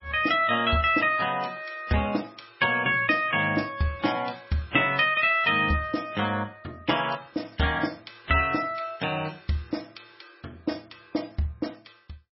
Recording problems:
lossy codec; MP3, log-spectral distance 5 dB, nothing above 5.5 kHz

